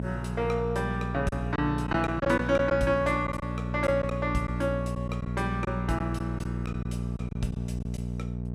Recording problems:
mains hum; 60 Hz, harmonics up to 660 Hz, SNR 3 dB
lost packets; 6% of the sound replaced, filled with silence

